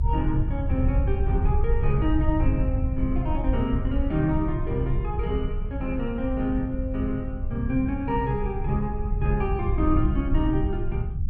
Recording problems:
low-frequency rumble; below 84 Hz, SNR 0 dB

